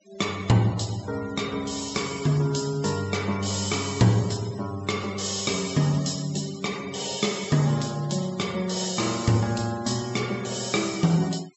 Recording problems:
treble missing; nothing above 7.8 kHz
noise reduction artefacts; signal-to-artefact ratio 18 dB

